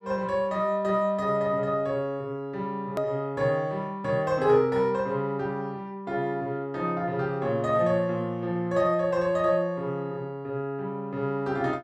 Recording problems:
hard cut with a click; at 3 s

